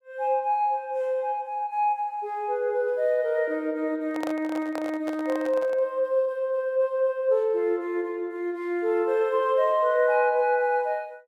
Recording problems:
microphone handling noise; from 4 to 6 s; peak -4 dB vs average level

